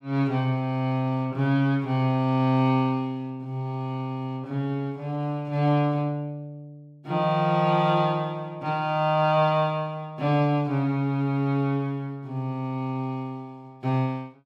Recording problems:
none

